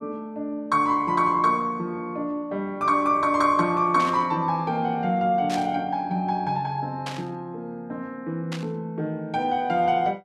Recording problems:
burst of static; 4 times, first at 4 s; peak -5 dB vs average level

